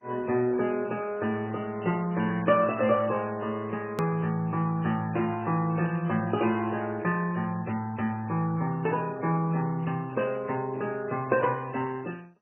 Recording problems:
lossy codec; MP3, then MP2, log-spectral distance 3 dB, nothing above 20.1 kHz
edit click; at 4 s

